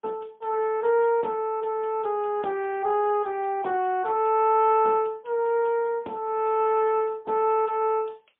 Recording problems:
phone line; 280 Hz to 3.6 kHz, AMR-NB, then MP3

